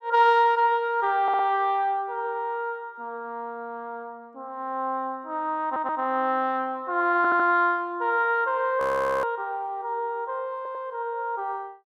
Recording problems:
audio stuttering; 4 times, first at 1 s
audio freezing; at 9 s

